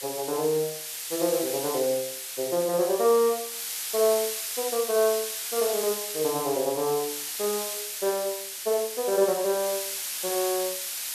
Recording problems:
hiss; slope +4 dB per octave, SNR 4 dB

